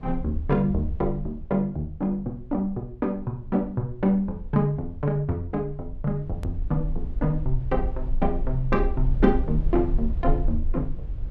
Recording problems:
rumble; below 44 Hz, strongest tone 20 Hz, SNR 5 dB
hard cut with a click; at 6.5 s

